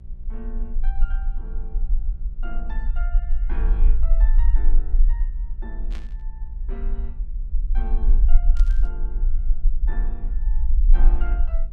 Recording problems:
electrical hum; 60 Hz, harmonics up to 600 Hz, SNR 6 dB
low-frequency rumble; below 40 Hz, strongest tone 20 Hz, SNR -17 dB
static burst; at 6 s and at 8.5 s; peak +2 dB vs average level

